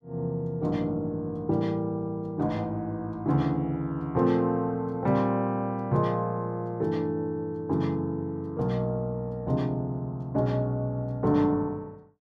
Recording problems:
none

